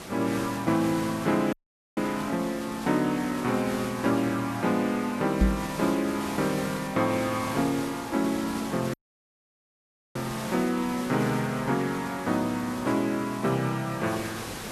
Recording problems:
hiss; slope -4 dB per octave, SNR 11 dB
dropout; at 1.5 s and at 9 s for 1 s
microphone thump; at 5.5 s; peak +7 dB vs average level

